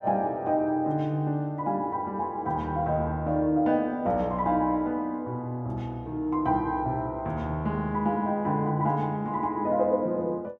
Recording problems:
none

